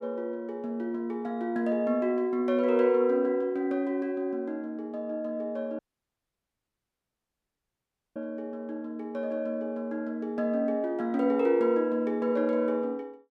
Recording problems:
audio cutting out; at 6 s for 2.5 s

